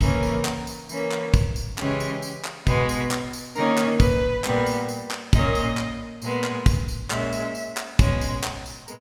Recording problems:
none

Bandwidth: 18 kHz